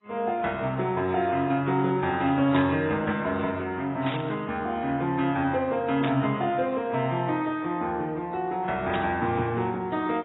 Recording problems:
codec artefacts; AAC, then MP2, log-spectral distance 2 dB, nothing above 3.7 kHz
burst of static; 4 times, first at 2.5 s; peak -3 dB vs average level

